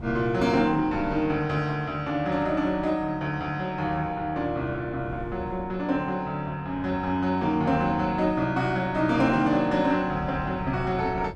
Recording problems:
wind on the microphone; below 220 Hz, SNR 17 dB

